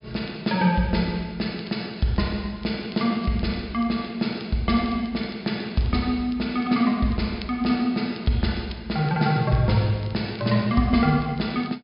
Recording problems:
treble missing; nothing above 5.5 kHz
crackling; vinyl, SNR 26 dB

